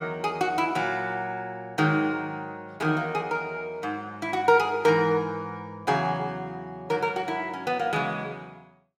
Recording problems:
none

